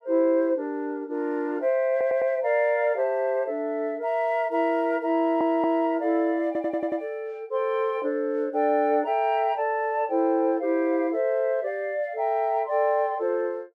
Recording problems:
stutter; at 2 s, at 5 s and at 6.5 s

